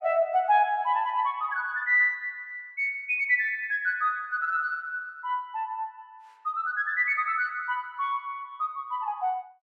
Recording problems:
none

